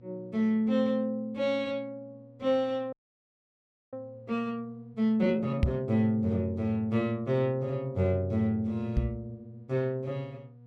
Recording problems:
hum; 60 Hz, harmonics up to 720 Hz, SNR 23 dB
audio freezing; at 3 s for 1 s
knock on the microphone; at 5.5 s and at 9 s; peak +8 dB vs average level

